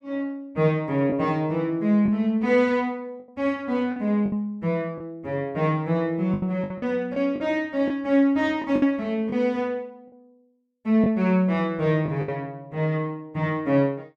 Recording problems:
lost packets; 5% of the sound replaced, filled with the last packet

